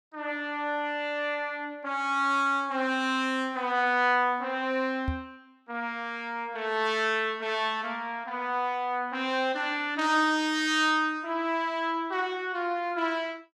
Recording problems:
microphone thump; at 5 s; peak 0 dB vs average level

